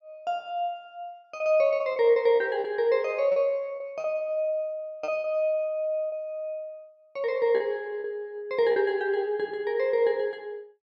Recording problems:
lost packets; 6% of the sound replaced, filled with repeated pitch periods

